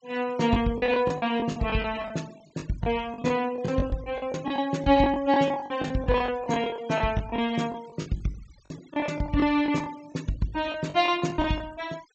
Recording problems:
treble cut off; nothing above 8 kHz
noise reduction artefacts; signal-to-artefact ratio 23 dB
lost packets; 15% of the sound replaced, filled with the last packet

